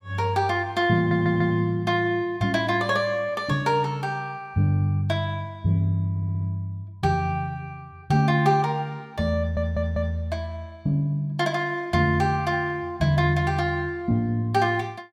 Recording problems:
stutter; at 1 s, at 6 s and at 9.5 s

